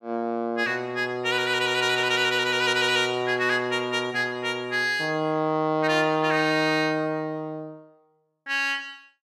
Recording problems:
burst of static; at 2 s; peak -14 dB vs average level

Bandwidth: 14 kHz